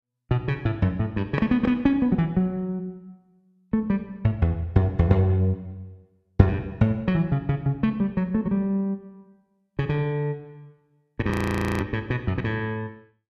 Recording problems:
frozen audio; at 11 s for 0.5 s

